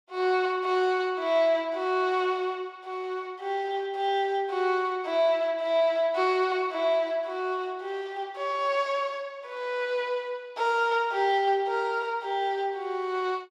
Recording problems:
none

